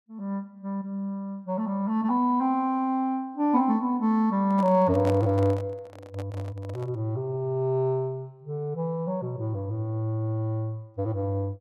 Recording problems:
handling noise; from 4.5 to 7 s; peak -4 dB vs average level

